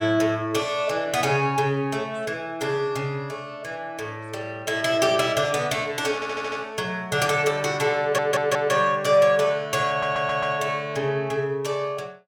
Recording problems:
audio stuttering; at 6 s, at 8 s and at 10 s

